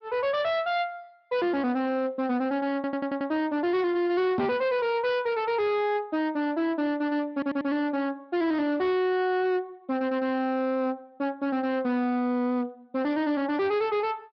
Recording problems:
treble cut off; nothing above 5 kHz
lossy compression; Speex, log-spectral distance 2 dB
distorted audio; hard clipping, uneven, signal-to-distortion ratio 8 dB
audio stuttering; at 3 s and at 7.5 s
knock on the microphone; at 4.5 s; peak +3 dB vs average level

